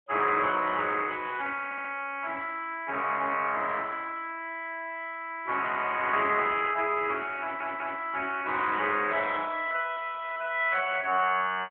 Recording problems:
telephone audio; 220 Hz to 3.4 kHz, AMR-NB
audio stuttering; at 1.5 s and at 7.5 s

